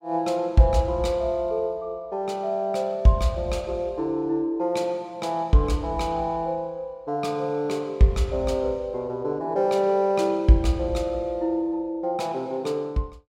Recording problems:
none

